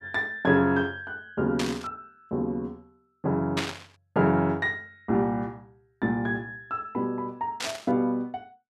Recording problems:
static burst; at 1.5 s, at 3.5 s and at 7.5 s; peak +3 dB vs average level

